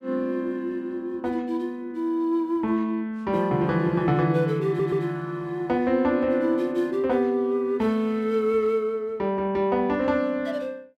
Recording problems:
stutter; at 4.5 s

